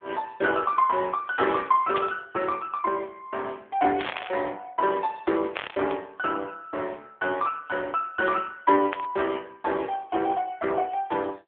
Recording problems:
phone line; 300 Hz to 3.4 kHz, AMR-NB
burst of static; 4 times, first at 2 s; peak 0 dB vs average level

